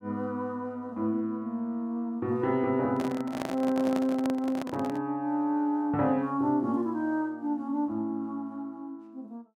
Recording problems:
microphone handling noise; from 3 to 5 s; peak -1 dB vs average level

